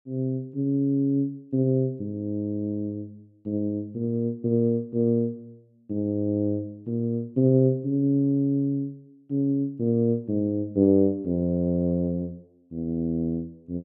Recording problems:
none

